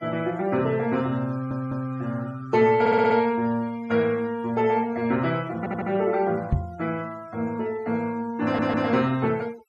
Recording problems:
noise reduction artefacts; signal-to-artefact ratio 24 dB
stutter; 4 times, first at 1.5 s
microphone thump; at 6.5 s; peak +6 dB vs average level

